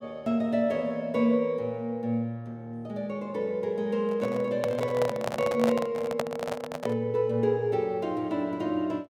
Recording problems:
handling noise; from 4 to 7 s; peak +4 dB vs average level

